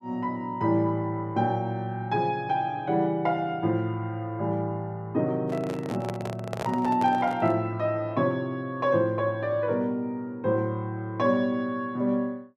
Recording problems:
handling noise; from 5.5 to 7.5 s; peak -2 dB vs average level

